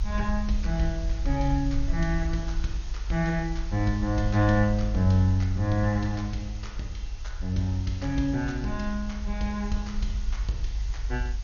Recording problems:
lossy compression; MP2, log-spectral distance 2 dB, nothing above 6.7 kHz
background hiss; SNR 20 dB
rumble; below 50 Hz, strongest tone 48 Hz, SNR 5 dB

